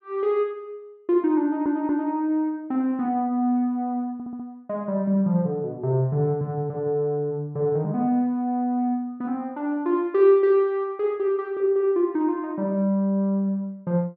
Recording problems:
audio stuttering; at 1.5 s and at 4 s

